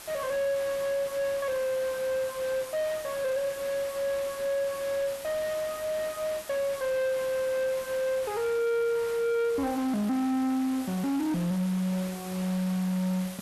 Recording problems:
distorted audio; soft clipping, signal-to-distortion ratio 11 dB
hiss; SNR 8 dB

